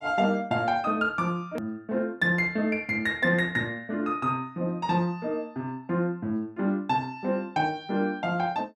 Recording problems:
edit click; at 1.5 s

